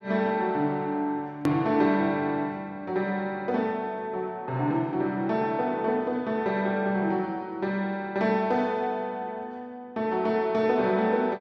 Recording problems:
edit click; at 1.5 s

